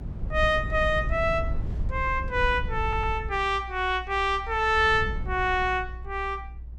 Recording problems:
rumble; below 86 Hz, SNR 9 dB
audio stuttering; at 3 s

